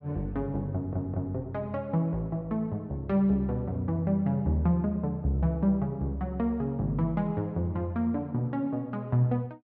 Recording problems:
stutter; at 0.5 s

